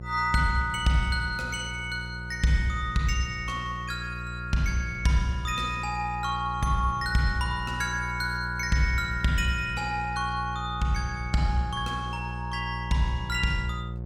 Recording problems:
electrical hum; 60 Hz, harmonics up to 540 Hz, SNR 9 dB

